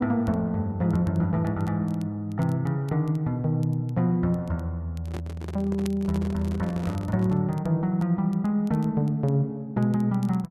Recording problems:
crackling; vinyl, SNR 30 dB
handling noise; from 5 to 7.5 s; peak -6 dB vs average level

